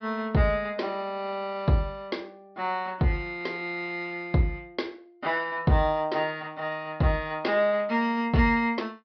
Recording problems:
low-pass filter; nothing above 5.5 kHz

